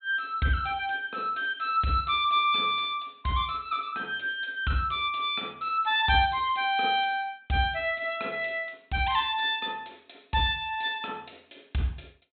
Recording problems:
treble cut off; nothing above 4 kHz

